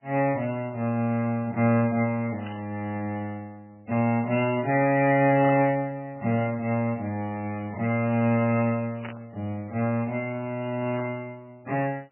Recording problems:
lossy compression; MP3, log-spectral distance 3 dB, nothing above 2.4 kHz
burst of static; 4 times, first at 2.5 s; peak -4 dB vs average level

